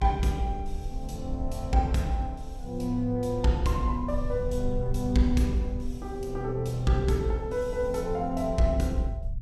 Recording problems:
rumble; below 62 Hz, SNR 10 dB

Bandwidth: 14.5 kHz